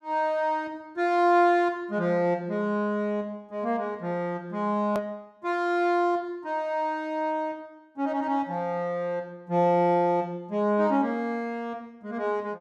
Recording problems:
edit click; at 5 s

